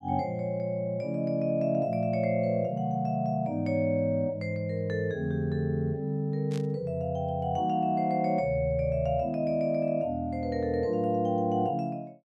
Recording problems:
static burst; at 6.5 s; peak -12 dB vs average level

